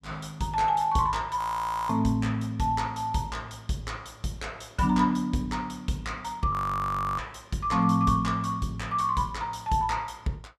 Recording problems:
frozen audio; at 1.5 s for 0.5 s and at 6.5 s for 0.5 s

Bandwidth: 14.5 kHz